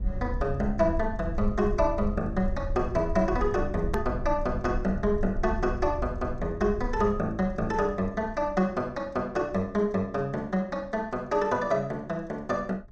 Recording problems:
rumble; below 72 Hz, SNR 7 dB
edit click; at 4 s

